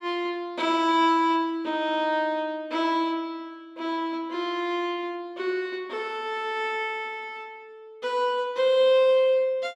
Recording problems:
none

